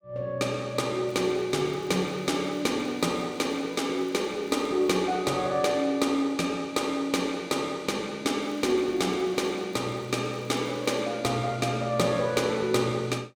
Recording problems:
crackling; from 1 to 5 s and from 8.5 to 11 s; loose cable, SNR 29 dB

